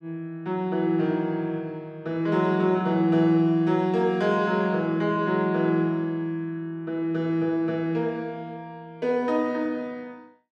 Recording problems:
none

